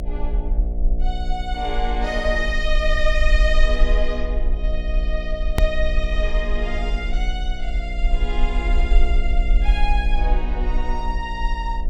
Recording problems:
electrical hum; 60 Hz, harmonics up to 720 Hz, SNR 9 dB
low-frequency rumble; below 44 Hz, strongest tone 20 Hz, SNR -3 dB
edit click; at 5.5 s

